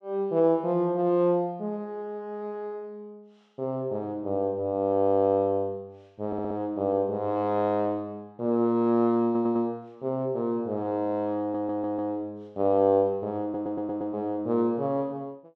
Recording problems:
audio stuttering; 4 times, first at 6.5 s

